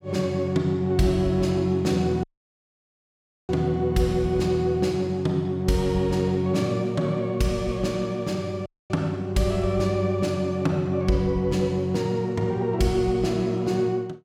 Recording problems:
dropout; at 2 s for 1.5 s and at 8.5 s

